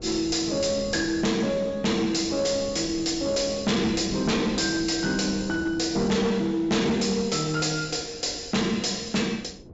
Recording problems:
low-pass filter; nothing above 8 kHz
distorted audio; hard clipping, signal-to-distortion ratio 7 dB
wind noise; below 390 Hz, SNR 17 dB

